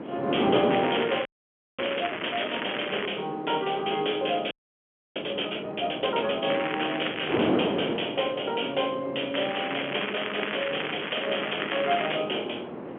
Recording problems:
phone line; 240 Hz to 3.3 kHz, G.711
wind on the microphone; below 650 Hz, SNR 5 dB
crackling; from 0.5 to 3 s, at 6.5 s and from 9.5 to 12 s; loose cable, SNR 5 dB
frozen audio; at 1.5 s for 0.5 s and at 4.5 s for 0.5 s

